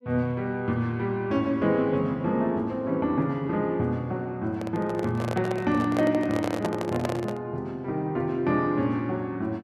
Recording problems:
microphone handling noise; from 4.5 to 7.5 s; peak +1 dB vs average level

